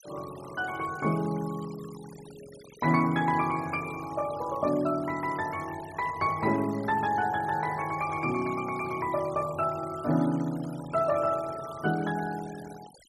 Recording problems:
noise reduction artefacts; signal-to-artefact ratio 19 dB

